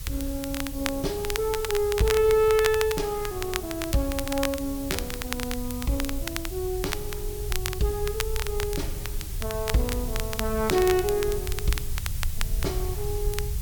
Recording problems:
background hiss; slope 0 dB per octave, SNR 11 dB
low-frequency rumble; below 76 Hz, SNR 8 dB
crackle; vinyl, SNR 7 dB

